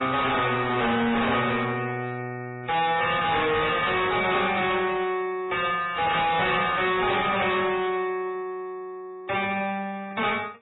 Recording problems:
codec artefacts; AAC, then MP3, log-spectral distance 7 dB, nothing above 3.8 kHz
distorted audio; hard clipping, signal-to-distortion ratio 6 dB

